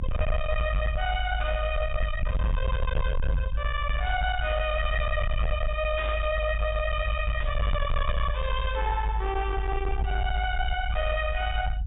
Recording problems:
treble cut off; nothing above 4 kHz
distorted audio; soft clipping, signal-to-distortion ratio 8 dB
low-frequency rumble; below 64 Hz, strongest tone 52 Hz, SNR 1 dB
burst of static; 4 times, first at 1.5 s; peak -8 dB vs average level

